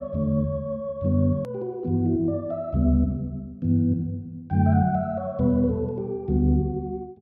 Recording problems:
click at an edit; at 1.5 s

